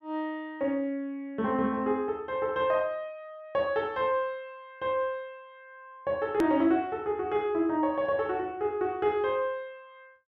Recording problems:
edit click; at 6.5 s

